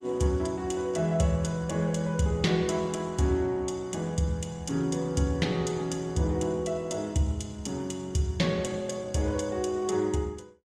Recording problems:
codec artefacts; Opus, log-spectral distance 3 dB, nothing above 15.5 kHz

